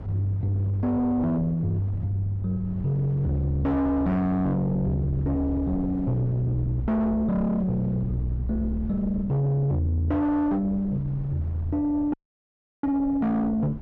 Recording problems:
distortion; soft clipping, signal-to-distortion ratio 8 dB
rumble; below 160 Hz, SNR 13 dB
wind on the microphone; below 500 Hz, SNR 23 dB
audio cutting out; at 12 s for 0.5 s

